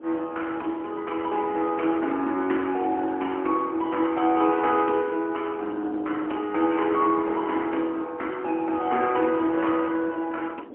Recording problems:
telephone audio; 240 Hz to 3.1 kHz, AMR-NB, then MP3
wind noise; below 490 Hz, SNR 20 dB

